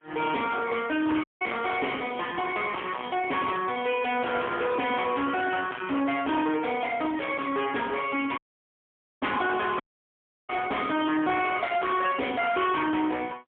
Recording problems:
telephone audio; 240 Hz to 3.4 kHz, AMR-NB, then MP3
distortion; hard clipping, uneven, signal-to-distortion ratio 7 dB
dropout; at 1 s, at 8.5 s for 1 s and at 10 s for 0.5 s

